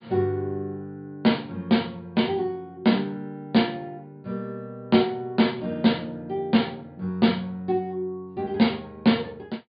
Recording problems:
treble missing; nothing above 4.7 kHz

